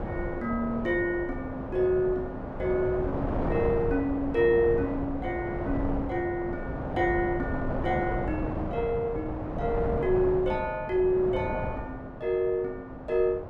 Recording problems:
wind on the microphone; below 620 Hz, SNR 5 dB

